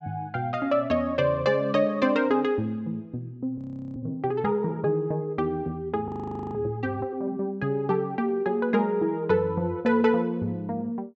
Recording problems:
low-pass filter; nothing above 7.9 kHz
frozen audio; at 3.5 s and at 6 s

